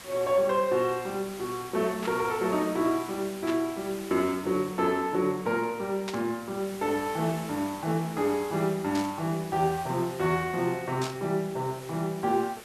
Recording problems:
hiss; slope -2 dB per octave, SNR 16 dB
static burst; 5 times, first at 2 s; peak -3 dB vs average level

